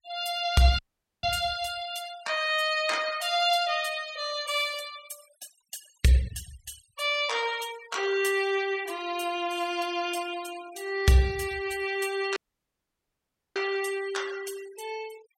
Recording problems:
denoising artefacts; signal-to-artefact ratio 17 dB
dropout; at 1 s and at 12 s for 1 s

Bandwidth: 16.5 kHz